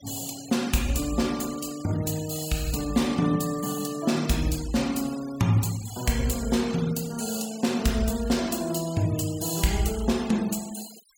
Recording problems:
noise reduction artefacts; signal-to-artefact ratio 16 dB

